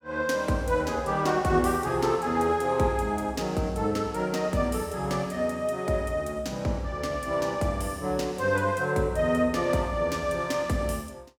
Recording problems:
none

